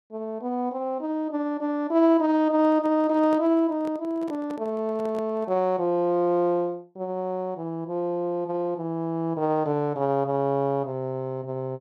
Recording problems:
microphone handling noise; from 2.5 to 5.5 s; peak -9 dB vs average level

